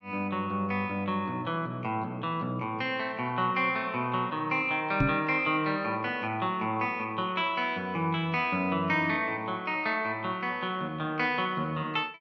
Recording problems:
low-pass filter; nothing above 8 kHz
microphone thump; at 5 s; peak +6 dB vs average level

